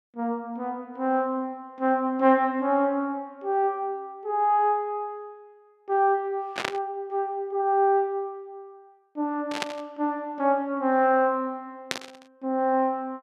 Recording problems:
burst of static; at 6.5 s, at 9.5 s and at 12 s; peak +2 dB vs average level

